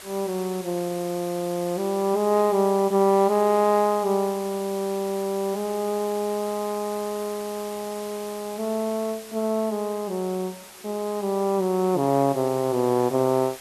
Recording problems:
background hiss; slope -1 dB per octave, SNR 16 dB

